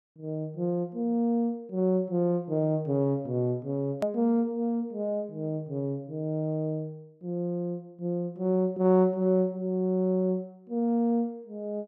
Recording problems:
edit click; at 4 s

